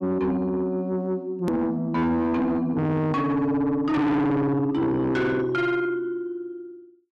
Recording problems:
distortion; soft clipping, signal-to-distortion ratio 7 dB
click at an edit; at 1.5 s

